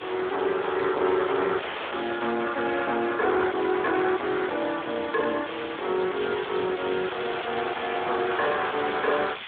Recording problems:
phone line; 300 Hz to 3.6 kHz, Speex
distortion; soft clipping, signal-to-distortion ratio 6 dB
hiss; SNR 12 dB
wind noise; below 700 Hz, SNR 19 dB
audio cutting out; at 1.5 s

